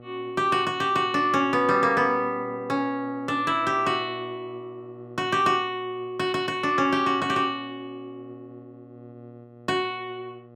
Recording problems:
electrical hum; 60 Hz, harmonics up to 1.3 kHz, SNR 22 dB

